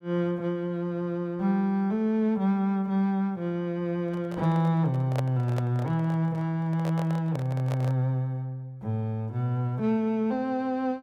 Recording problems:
handling noise; from 4 to 8 s; peak -2 dB vs average level

